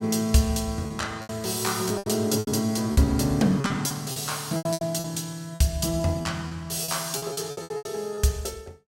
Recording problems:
packet loss; 13% of the sound replaced, filled with repeated pitch periods

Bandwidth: 16 kHz